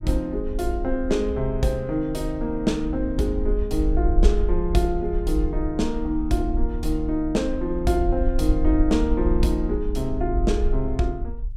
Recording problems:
rumble; below 56 Hz, SNR 3 dB

